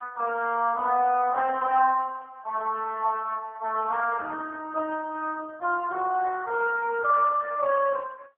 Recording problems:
telephone audio; 260 Hz to 3.3 kHz, AMR-NB

